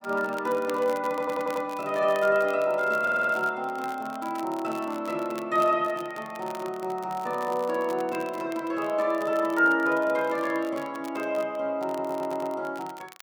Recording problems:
crackling; vinyl, SNR 21 dB
stutter; at 1 s, at 3 s and at 12 s

